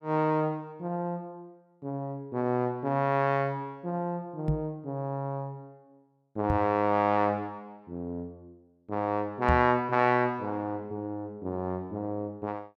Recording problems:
knock on the microphone; at 4.5 s, at 6.5 s and at 9.5 s; peak +5 dB vs average level

